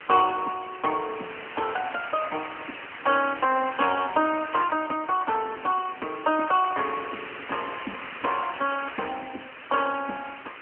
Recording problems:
telephone audio; 240 Hz to 3.1 kHz, AMR-NB
background hiss; SNR 12 dB

